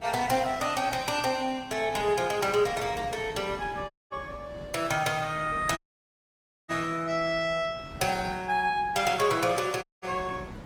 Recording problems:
codec artefacts; Opus, log-spectral distance 3 dB, nothing above 19 kHz
wind on the microphone; below 470 Hz, SNR 19 dB
dropout; at 4 s, at 6 s for 1 s and at 10 s

